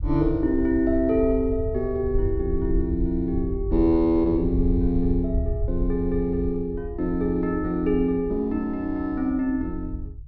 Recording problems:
treble missing; nothing above 5.7 kHz
low-frequency rumble; below 78 Hz, SNR 7 dB

